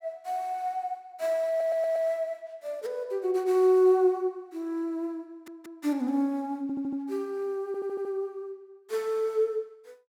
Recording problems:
stutter; 4 times, first at 1.5 s

